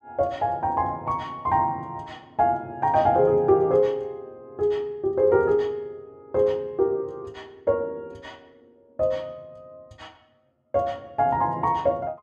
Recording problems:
none

